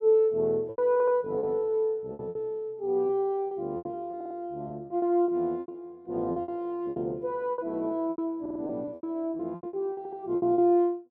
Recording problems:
packet loss; 14% of the sound replaced, filled with repeated pitch periods
stutter; 4 times, first at 1 s

